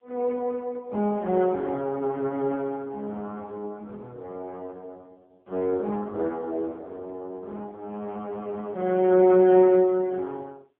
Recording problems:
telephone audio; 240 Hz to 2.2 kHz, AMR-NB

